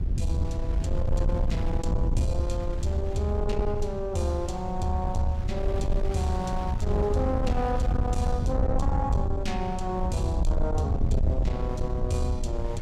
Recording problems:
distorted audio; soft clipping, signal-to-distortion ratio 11 dB
low-frequency rumble; below 90 Hz, SNR 1 dB
wind on the microphone; below 2 kHz, SNR 18 dB

